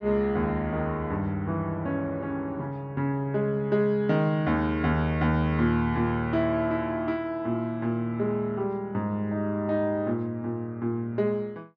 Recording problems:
none

